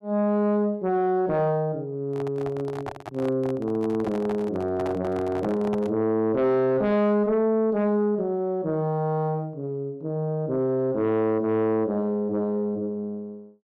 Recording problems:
distortion; soft clipping, signal-to-distortion ratio 11 dB
microphone handling noise; from 2 to 6 s; peak -4 dB vs average level

